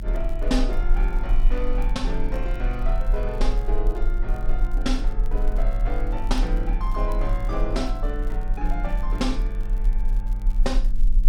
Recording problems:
electrical hum; 50 Hz, harmonics up to 500 Hz, SNR 10 dB
low-frequency rumble; below 38 Hz, SNR -4 dB
crackle; vinyl, SNR 25 dB

